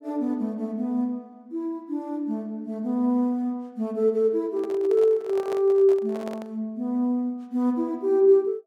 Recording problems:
handling noise; from 4.5 to 6.5 s; peak -8 dB vs average level

